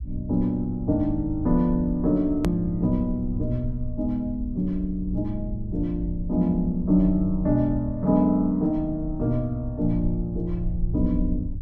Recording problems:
low-frequency rumble; below 74 Hz, SNR 10 dB
edit click; at 2.5 s

